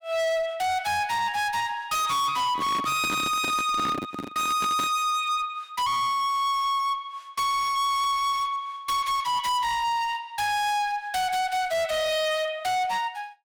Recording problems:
distorted audio; hard clipping, uneven, signal-to-distortion ratio 7 dB
handling noise; from 2.5 to 5 s; peak -3 dB vs average level

